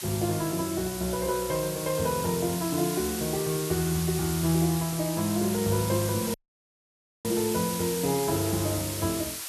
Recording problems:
hiss; slope +3 dB per octave, SNR 6 dB
audio cutting out; at 6.5 s for 1 s

